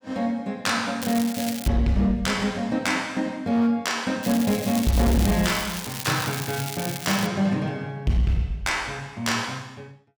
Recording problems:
distortion; hard clipping, signal-to-distortion ratio 11 dB
crackling; at 1 s and from 4 to 7.5 s; loose cable, SNR 9 dB

